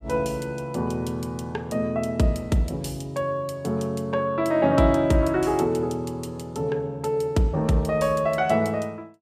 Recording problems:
none

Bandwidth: 15 kHz